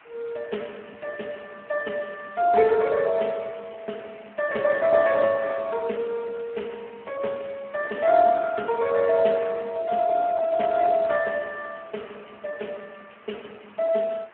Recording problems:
phone line; 260 Hz to 2.8 kHz, Speex
background hiss; SNR 27 dB

